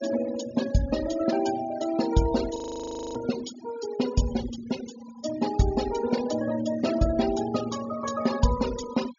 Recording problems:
treble cut off; nothing above 7.1 kHz
noise reduction artefacts; signal-to-artefact ratio 12 dB
frozen audio; at 2.5 s for 0.5 s

